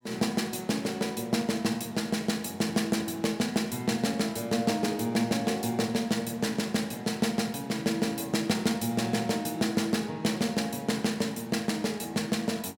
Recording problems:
none

